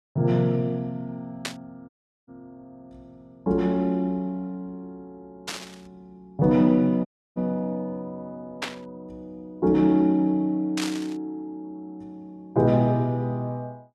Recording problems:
static burst; 4 times, first at 1.5 s; peak -1 dB vs average level
audio cutting out; at 2 s and at 7 s

